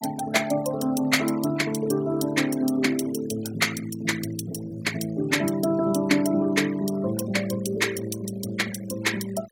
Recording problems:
noise reduction artefacts; signal-to-artefact ratio 17 dB

